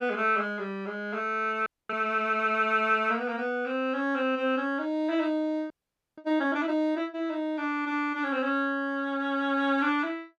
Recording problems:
audio freezing; at 1.5 s and at 5.5 s

